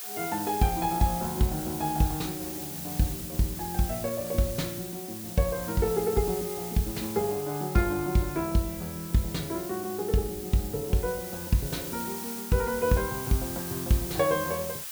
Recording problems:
background hiss; slope +2 dB per octave, SNR 7 dB

